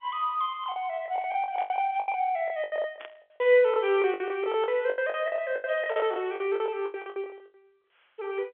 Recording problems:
phone line; 300 Hz to 3.4 kHz, G.711
lost packets; 20% of the sound replaced, filled with the last packet
static burst; at 1.5 s, at 3 s and at 6 s; peak -12 dB vs average level

